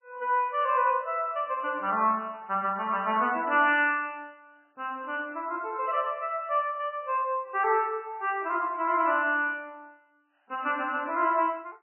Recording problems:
lossy compression; MP3, log-spectral distance 2 dB, nothing above 2.7 kHz

